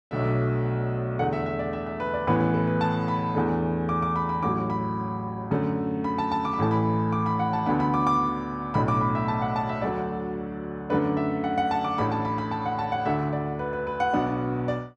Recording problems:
none

